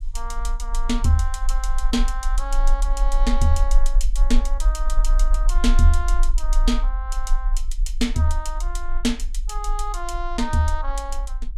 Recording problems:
rumble; below 38 Hz, strongest tone 22 Hz, SNR -1 dB

